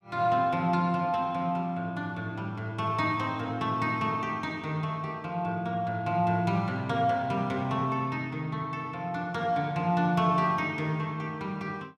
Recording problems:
none

